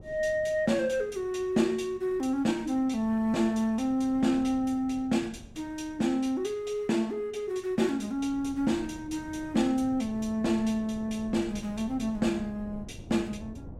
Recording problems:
wind on the microphone; below 260 Hz, SNR 19 dB

